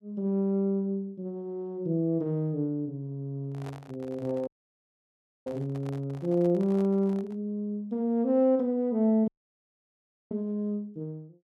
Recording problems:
microphone handling noise; from 3.5 to 7.5 s; peak -12 dB vs average level
audio cutting out; at 4.5 s for 1 s and at 9.5 s for 1 s

